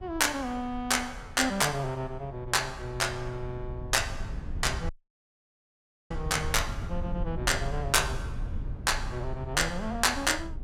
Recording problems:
low-frequency rumble; below 90 Hz, SNR 10 dB
audio cutting out; at 5 s for 1 s

